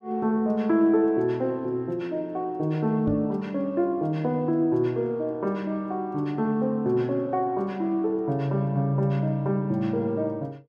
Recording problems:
knock on the microphone; at 3 s; peak -4 dB vs average level

